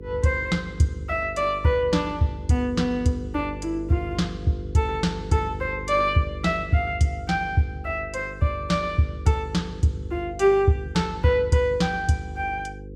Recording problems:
electrical hum; 50 Hz, harmonics up to 500 Hz, SNR 14 dB

